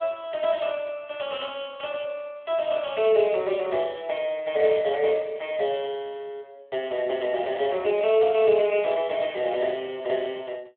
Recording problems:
phone line; 320 Hz to 3.6 kHz, Speex

